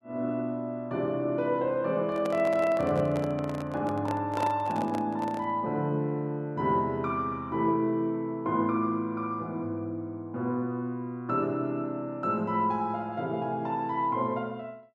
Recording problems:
handling noise; from 2 to 5.5 s; peak -2 dB vs average level

